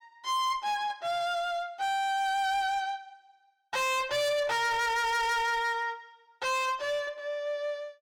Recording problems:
distortion; hard clipping, uneven, signal-to-distortion ratio 6 dB

